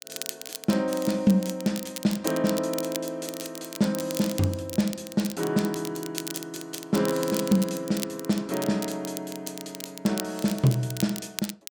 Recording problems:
crackling; vinyl, SNR 10 dB

